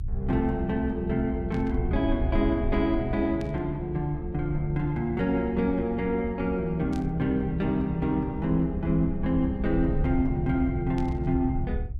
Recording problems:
electrical hum; 60 Hz, harmonics up to 660 Hz, SNR 23 dB
low-frequency rumble; below 72 Hz, SNR 8 dB
burst of static; 4 times, first at 1.5 s; peak -14 dB vs average level

